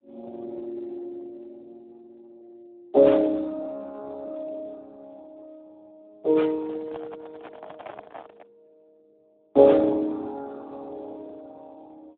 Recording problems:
phone line; 280 Hz to 3 kHz, Speex
handling noise; from 6.5 to 8.5 s; peak -11 dB vs average level

